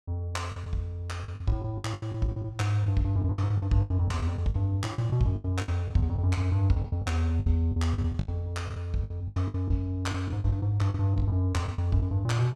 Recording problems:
packet loss; 16% of the sound replaced, filled with the last packet

